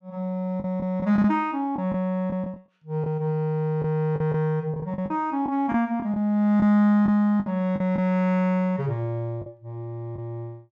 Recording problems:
packet loss; 7% of the sound replaced, filled with the last packet

